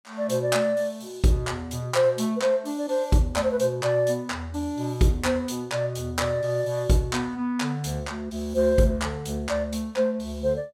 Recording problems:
none

